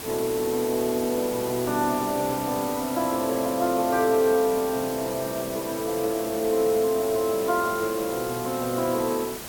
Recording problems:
hiss; slope -3 dB per octave, SNR 9 dB

